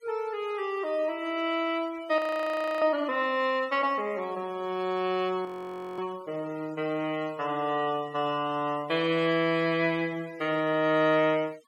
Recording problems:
denoising artefacts; signal-to-artefact ratio 24 dB
audio freezing; at 2 s for 0.5 s and at 5.5 s for 0.5 s

